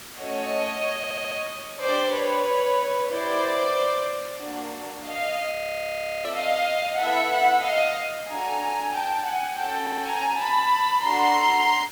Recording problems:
hiss; slope -1 dB per octave, SNR 15 dB
stutter; at 1 s and at 10 s
audio freezing; at 5.5 s for 0.5 s

